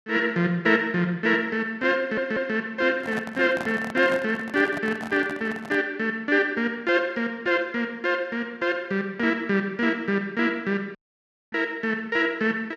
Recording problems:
stutter; at 2 s
handling noise; from 3 to 6 s; peak -5 dB vs average level
dropout; at 11 s for 0.5 s

